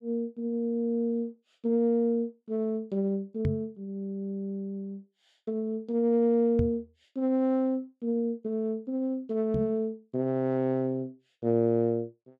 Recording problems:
microphone bump; at 3.5 s, at 6.5 s and at 9.5 s; peak +4 dB vs average level

